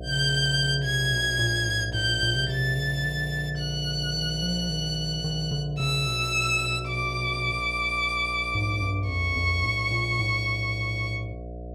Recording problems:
hum; 60 Hz, harmonics up to 720 Hz, SNR 13 dB

